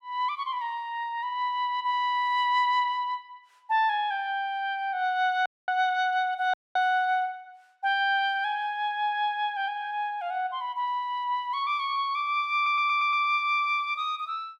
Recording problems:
audio cutting out; at 5.5 s and at 6.5 s
audio stuttering; at 13 s

